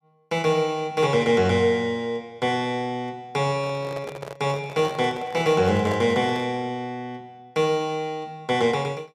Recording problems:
microphone handling noise; from 3.5 to 6.5 s; peak -5 dB vs average level

